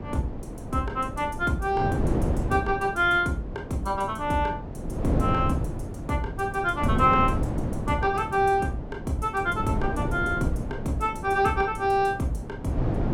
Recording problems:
wind noise; below 330 Hz, SNR 5 dB

